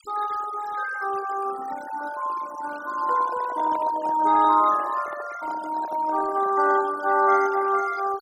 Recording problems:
noise reduction artefacts; signal-to-artefact ratio 16 dB
microphone handling noise; from 3 to 7 s; peak -10 dB vs average level

